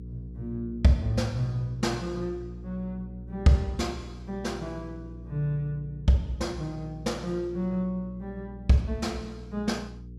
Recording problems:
hum; 60 Hz, harmonics up to 480 Hz, SNR 13 dB

